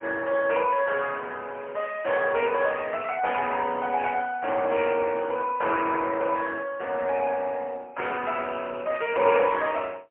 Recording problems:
phone line; 300 Hz to 3.1 kHz, AMR-NB, then MP3

